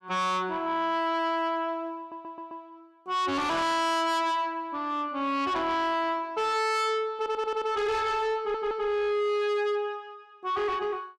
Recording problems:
distortion; soft clipping, signal-to-distortion ratio 7 dB
audio stuttering; at 2 s, at 7 s and at 8.5 s

